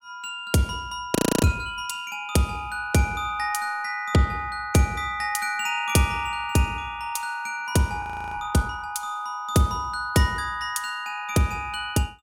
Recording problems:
frozen audio; at 1 s and at 8 s

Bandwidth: 16 kHz